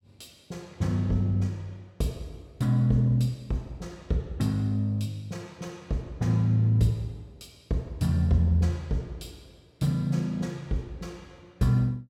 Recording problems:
none

